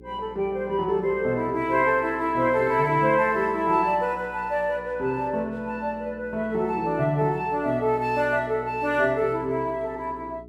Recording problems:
hum; 60 Hz, harmonics up to 420 Hz, SNR 22 dB

